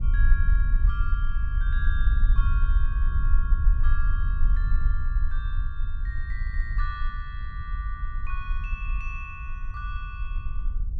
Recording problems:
low-frequency rumble; below 50 Hz, SNR -11 dB

